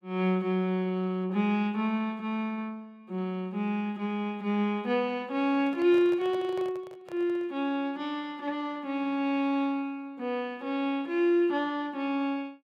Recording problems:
microphone handling noise; from 5.5 to 7.5 s; peak -11 dB vs average level

